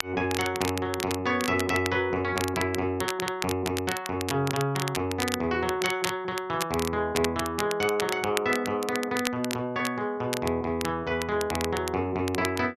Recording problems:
crackle; vinyl, SNR 7 dB

